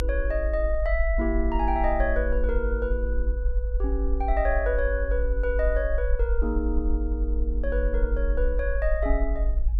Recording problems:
rumble; below 52 Hz, SNR -1 dB

